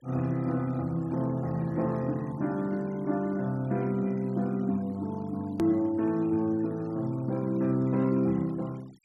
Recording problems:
noise reduction artefacts; signal-to-artefact ratio 26 dB
click at an edit; at 5.5 s

